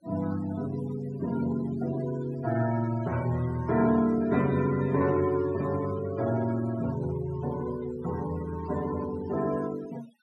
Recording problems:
noise reduction artefacts; signal-to-artefact ratio 16 dB

